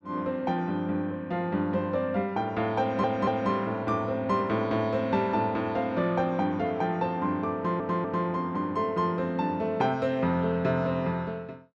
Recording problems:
stutter; at 3 s and at 7.5 s

